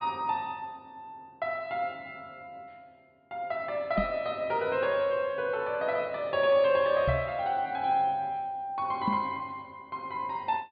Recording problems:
treble cut off; nothing above 4.8 kHz
knock on the microphone; at 4 s, at 7 s and at 9 s; peak +3 dB vs average level

